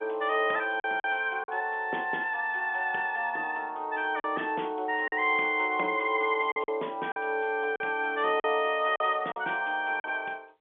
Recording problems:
phone line; 260 Hz to 3.5 kHz, G.711
lost packets; 5% of the sound replaced, filled with silence

